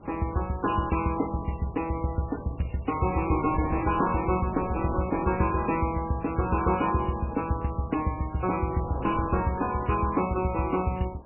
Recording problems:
codec artefacts; MP3, log-spectral distance 4 dB, nothing above 2.7 kHz
wind on the microphone; below 640 Hz, SNR 15 dB

